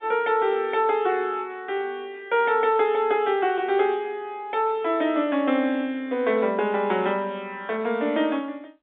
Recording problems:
telephone audio; 190 Hz to 3.7 kHz, G.711

